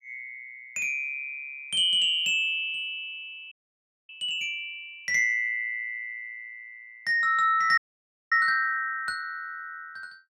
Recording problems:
audio freezing; at 3.5 s for 0.5 s and at 8 s for 0.5 s

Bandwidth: 16 kHz